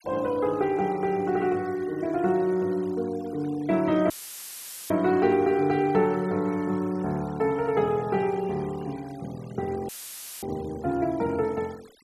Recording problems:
noise reduction artefacts; signal-to-artefact ratio 24 dB
dropout; at 4 s for 1 s and at 10 s for 0.5 s; filled with static

